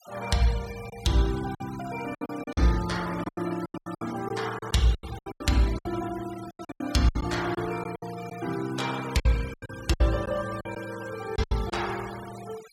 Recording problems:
noise reduction artefacts; signal-to-artefact ratio 15 dB
lost packets; 13% of the sound replaced, filled with silence

